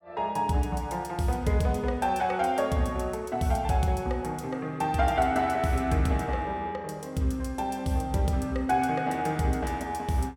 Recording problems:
none

